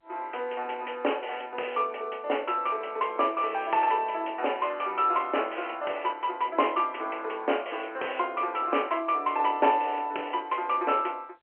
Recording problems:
phone line; 320 Hz to 3.1 kHz, G.711

